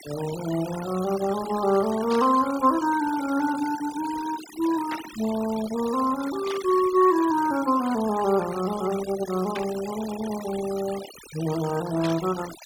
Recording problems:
noise reduction artefacts; signal-to-artefact ratio 14 dB
static burst; 5 times, first at 2 s; peak -6 dB vs average level

